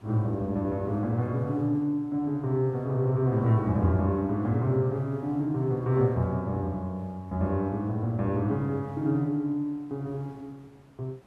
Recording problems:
background hiss; slope -6 dB per octave, SNR 29 dB

